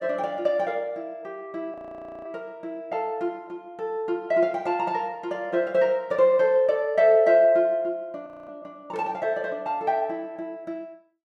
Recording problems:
audio freezing; at 1.5 s for 0.5 s and at 8.5 s

